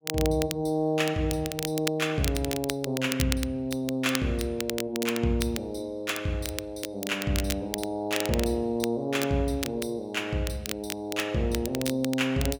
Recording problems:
crackling; vinyl, SNR 8 dB

